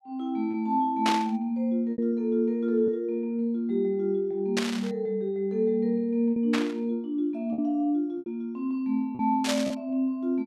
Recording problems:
packet loss; 4% of the sound replaced, filled with repeated pitch periods
static burst; 4 times, first at 1 s; peak +3 dB vs average level

